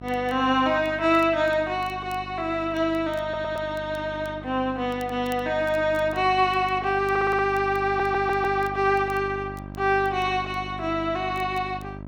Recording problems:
hum; 50 Hz, harmonics up to 1.4 kHz, SNR 15 dB
crackle; vinyl, SNR 30 dB
stutter; at 3 s, at 7 s and at 8 s

